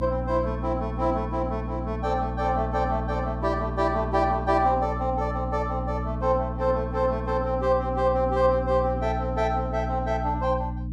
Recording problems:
hum; 60 Hz, harmonics up to 300 Hz, SNR 6 dB

